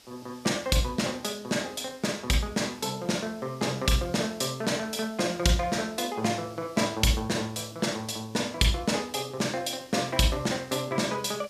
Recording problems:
hiss; slope 0 dB per octave, SNR 23 dB

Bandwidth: 14.5 kHz